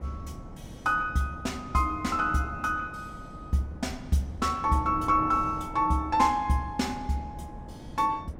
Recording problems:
wind noise; below 290 Hz, SNR 15 dB

